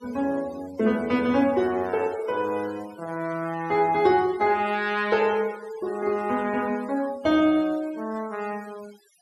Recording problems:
noise reduction artefacts; signal-to-artefact ratio 22 dB

